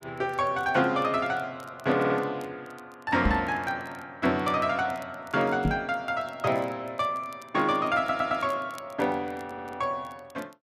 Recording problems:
crackling; vinyl, SNR 29 dB
stutter; at 2 s, at 8 s and at 9.5 s
microphone thump; at 3.5 s and at 5.5 s; peak +5 dB vs average level

